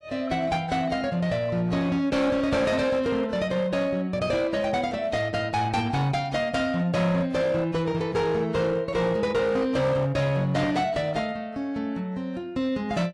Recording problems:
codec artefacts; AAC, log-spectral distance 2 dB, nothing above 11.3 kHz
distortion; hard clipping, signal-to-distortion ratio 11 dB

